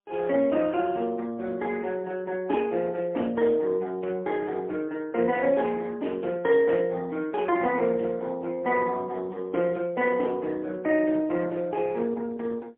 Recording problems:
telephone audio; 240 Hz to 3.3 kHz, AMR-NB, then MP3

